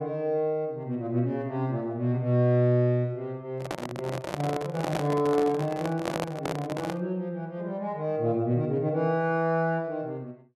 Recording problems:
handling noise; from 3.5 to 7 s; peak +2 dB vs average level

